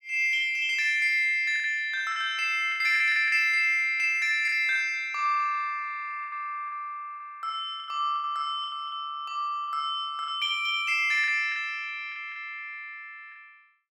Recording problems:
lost packets; 8% of the sound replaced, filled with the last packet

